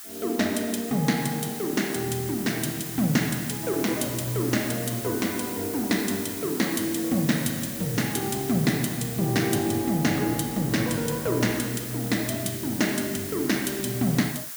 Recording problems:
hiss; SNR 8 dB

